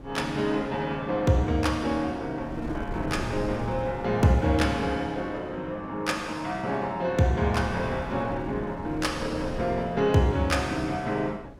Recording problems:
wind on the microphone; below 370 Hz, SNR 14 dB

